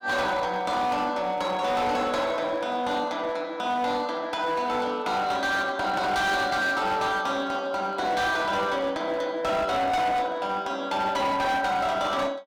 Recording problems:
distortion; hard clipping, uneven, signal-to-distortion ratio 11 dB

